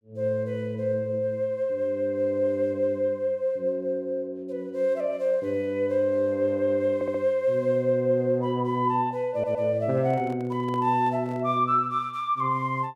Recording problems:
stutter; at 7 s and at 9.5 s
microphone handling noise; from 10 to 11 s; peak -10 dB vs average level

